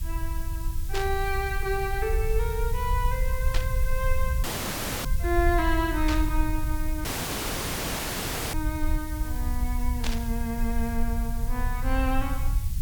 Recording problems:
background hiss; slope +2 dB per octave, SNR 12 dB
low-frequency rumble; below 66 Hz, SNR 0 dB
burst of static; 4 times, first at 1 s; peak +3 dB vs average level
dropout; at 4.5 s for 0.5 s and at 7 s for 1.5 s

